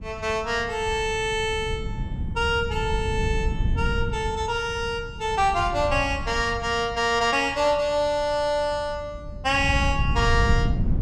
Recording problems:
wind noise; below 120 Hz, SNR 6 dB

